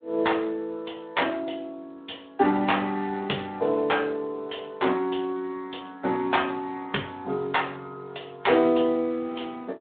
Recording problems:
telephone audio; 220 Hz to 3.6 kHz, Speex

